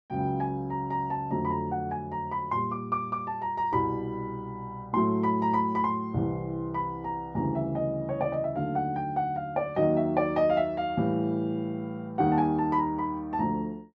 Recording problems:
none

